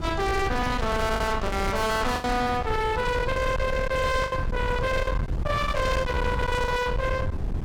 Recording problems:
distorted audio; hard clipping, signal-to-distortion ratio 7 dB
wind on the microphone; below 510 Hz, SNR 4 dB
lost packets; 5% of the sound replaced, filled with the last packet

